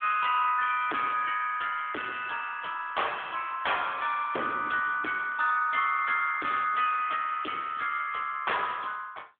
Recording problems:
phone line; 260 Hz to 3.4 kHz, AMR-NB
distortion; hard clipping, signal-to-distortion ratio 6 dB

